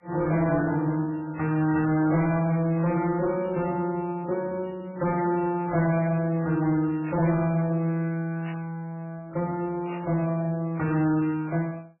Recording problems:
codec artefacts; MP3, then MP3, log-spectral distance 2 dB, nothing above 2.4 kHz
distorted audio; hard clipping, signal-to-distortion ratio 12 dB
static burst; 4 times, first at 3 s; peak -10 dB vs average level

